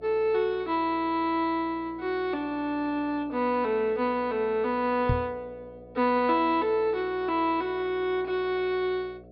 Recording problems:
low-pass filter; nothing above 5.5 kHz
electrical hum; 60 Hz, harmonics up to 720 Hz, SNR 23 dB
microphone bump; at 5 s; peak +4 dB vs average level

